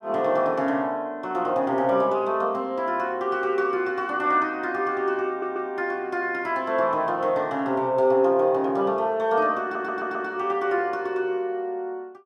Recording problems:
stutter; at 5.5 s and at 9.5 s

